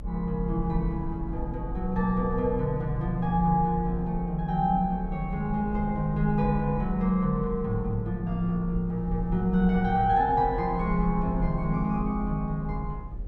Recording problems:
hum; 60 Hz, harmonics up to 600 Hz, SNR 20 dB
rumble; below 52 Hz, SNR 10 dB

